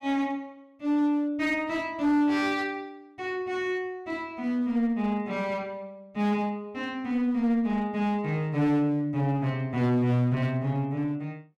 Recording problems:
distorted audio; hard clipping, uneven, signal-to-distortion ratio 9 dB

